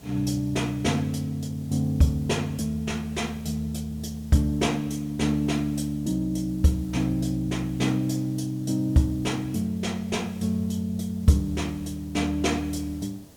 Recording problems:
hiss; SNR 22 dB

